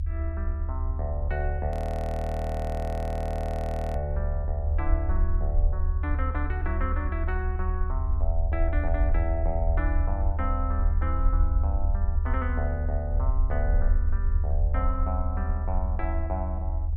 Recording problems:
low-frequency rumble; below 76 Hz, SNR -6 dB
frozen audio; at 1.5 s for 2 s

